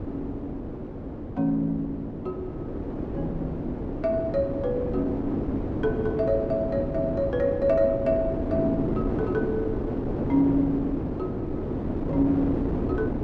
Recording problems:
wind noise; below 410 Hz, SNR 3 dB

